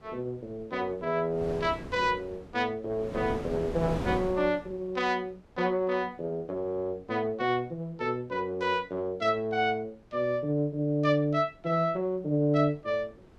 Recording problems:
wind noise; below 540 Hz, SNR 10 dB

